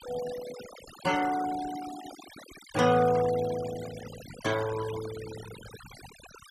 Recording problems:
noise reduction artefacts; signal-to-artefact ratio 13 dB

